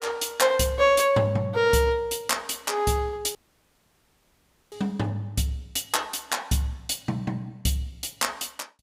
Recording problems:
audio cutting out; at 3.5 s for 1.5 s

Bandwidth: 15.5 kHz